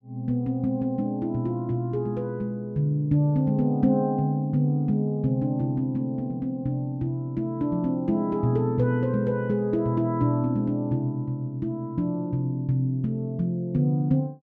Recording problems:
none

